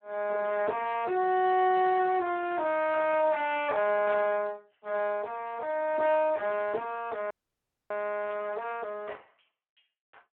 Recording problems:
phone line; 260 Hz to 3.2 kHz, Speex
crackling; from 1.5 to 4 s and at 6 s; loose cable, SNR 27 dB
audio freezing; at 7.5 s for 0.5 s

